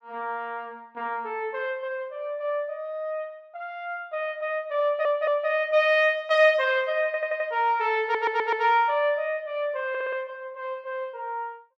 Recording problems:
stutter; 4 times, first at 5 s

